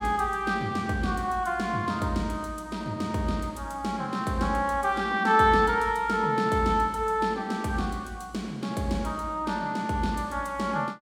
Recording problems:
none

